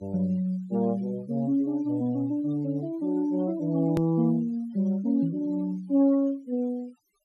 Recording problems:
noise reduction artefacts; signal-to-artefact ratio 27 dB
hard cut with a click; at 4 s

